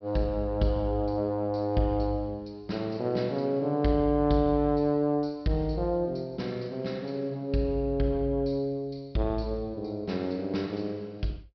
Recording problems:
treble missing; nothing above 5.5 kHz

